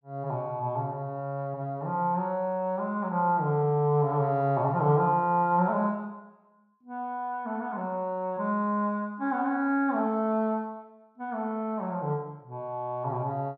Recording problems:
none

